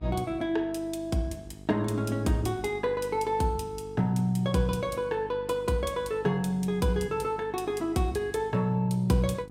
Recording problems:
electrical hum; 50 Hz, harmonics up to 900 Hz, SNR 17 dB

